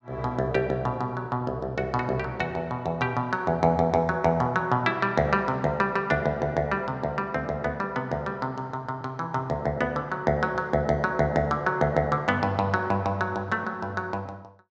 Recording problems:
none

